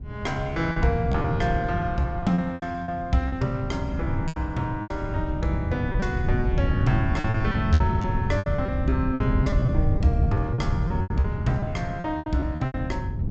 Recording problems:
treble cut off; nothing above 8 kHz
wind on the microphone; below 140 Hz, SNR 0 dB
packet loss; 12% of the sound replaced, filled with repeated pitch periods

